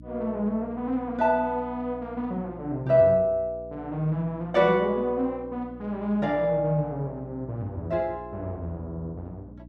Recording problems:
electrical hum; 60 Hz, harmonics up to 300 Hz, SNR 19 dB

